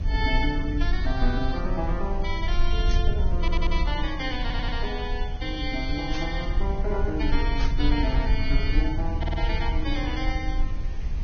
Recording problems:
lossy compression; Vorbis, log-spectral distance 2 dB, nothing above 5.7 kHz
background hiss; slope -4 dB per octave, SNR 19 dB
low-frequency rumble; below 58 Hz, SNR -1 dB
burst of static; at 3 s, at 6 s and at 7.5 s; peak -2 dB vs average level
stutter; at 3.5 s, at 4.5 s and at 9 s

